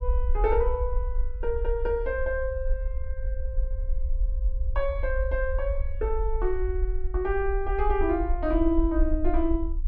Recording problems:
low-frequency rumble; below 52 Hz, SNR 2 dB

